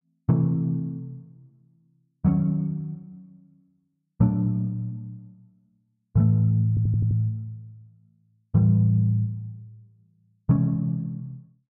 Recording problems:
stutter; at 6.5 s

